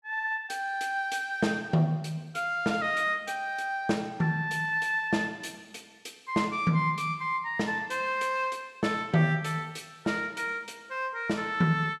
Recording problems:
none

